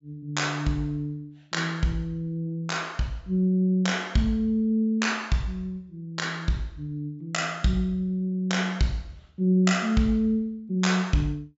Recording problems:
treble cut off; nothing above 8 kHz

